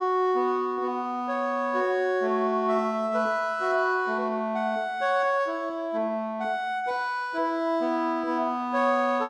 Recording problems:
none

